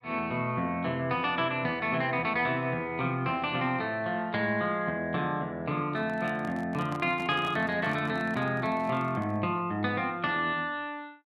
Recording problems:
handling noise; from 6 to 9.5 s; peak -8 dB vs average level

